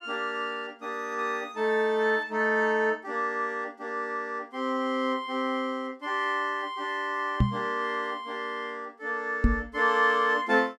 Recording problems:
knock on the microphone; at 7.5 s and at 9.5 s; peak +8 dB vs average level

